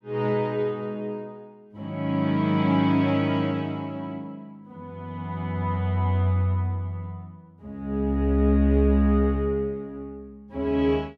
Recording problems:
none

